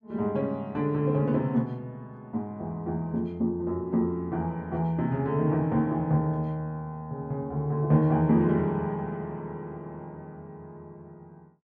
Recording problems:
none

